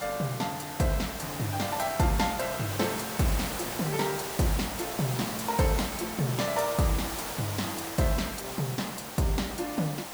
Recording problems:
background hiss; SNR 5 dB

